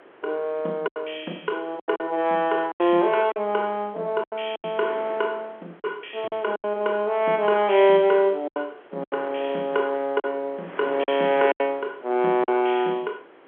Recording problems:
phone line; 280 Hz to 3.4 kHz, G.711
wind on the microphone; below 1.5 kHz, SNR 21 dB
lost packets; 8% of the sound replaced, filled with silence

